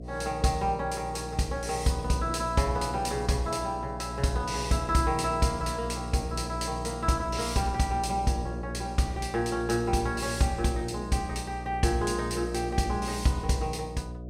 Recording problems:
hum; 60 Hz, harmonics up to 720 Hz, SNR 9 dB

